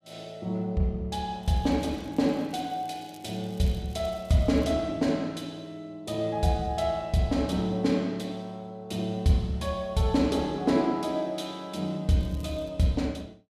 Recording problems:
crackle; from 1.5 to 4.5 s and at 12 s; loose cable, SNR 28 dB

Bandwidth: 14.5 kHz